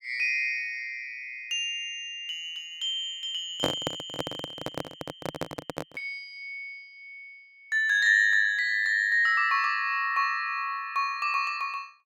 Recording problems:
microphone handling noise; from 3.5 to 6 s; peak +2 dB vs average level

